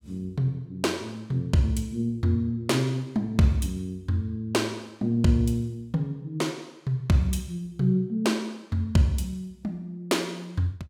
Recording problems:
none

